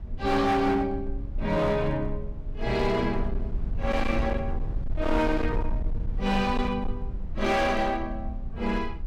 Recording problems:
distorted audio; hard clipping, signal-to-distortion ratio 11 dB
rumble; below 70 Hz, SNR 7 dB

